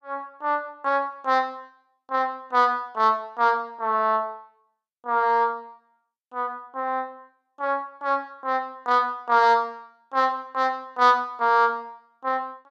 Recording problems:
none

